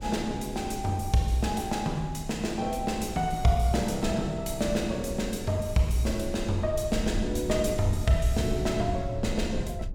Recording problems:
rumble; below 90 Hz, SNR 9 dB

